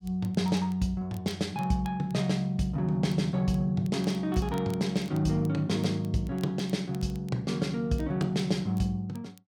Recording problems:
crackle; vinyl, SNR 26 dB

